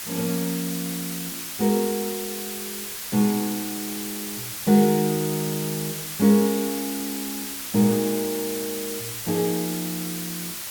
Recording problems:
background hiss; slope +1 dB per octave, SNR 5 dB

